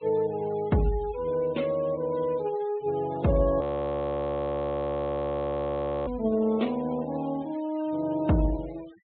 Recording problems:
treble cut off; nothing above 4 kHz
denoising artefacts; signal-to-artefact ratio 23 dB
audio freezing; at 3.5 s for 2.5 s

